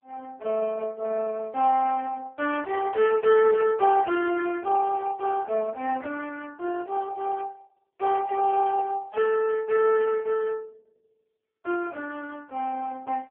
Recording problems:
telephone audio; 260 Hz to 2.2 kHz, AMR-NB

